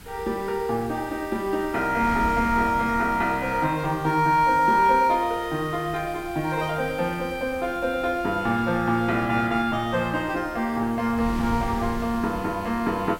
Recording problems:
background hiss; SNR 23 dB
wind on the microphone; below 220 Hz, SNR 16 dB

